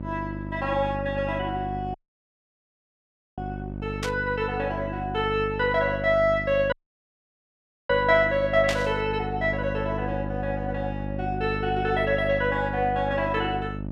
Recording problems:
electrical hum; 50 Hz, harmonics up to 650 Hz, SNR 8 dB
audio cutting out; at 2 s for 1.5 s and at 6.5 s for 1 s
static burst; at 4 s and at 8.5 s; peak +1 dB vs average level

